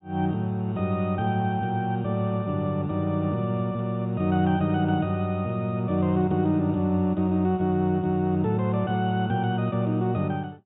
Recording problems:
treble missing; nothing above 4 kHz

